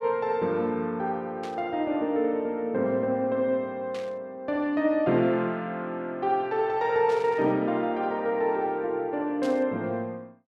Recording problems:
static burst; 4 times, first at 1.5 s; peak -11 dB vs average level

